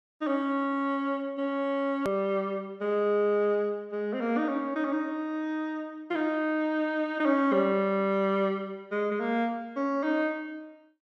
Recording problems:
click at an edit; at 2 s

